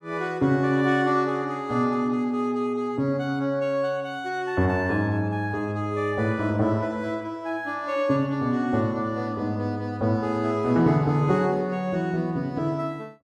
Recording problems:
none

